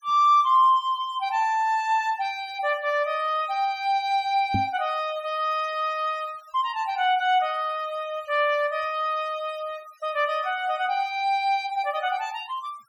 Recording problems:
noise reduction artefacts; signal-to-artefact ratio 27 dB
microphone thump; at 4.5 s; peak +1 dB vs average level

